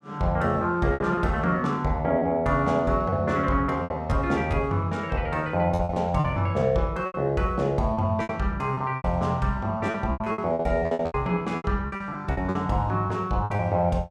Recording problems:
packet loss; 12% of the sound replaced, filled with repeated pitch periods

